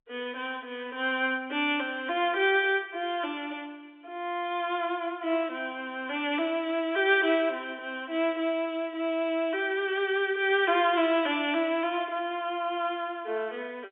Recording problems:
phone line; 280 Hz to 3.6 kHz, G.711

